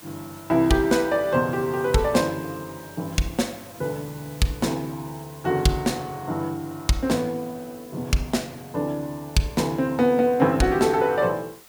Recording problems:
hiss; slope -1 dB per octave, SNR 22 dB

